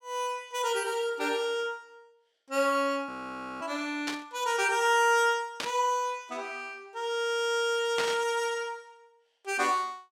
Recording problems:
audio freezing; at 3 s for 0.5 s
static burst; at 4 s, at 5.5 s and at 8 s; peak 0 dB vs average level

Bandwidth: 16.5 kHz